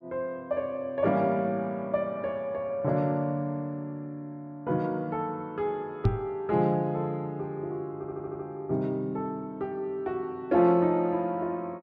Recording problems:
microphone bump; at 6 s; peak +9 dB vs average level
audio stuttering; at 8 s

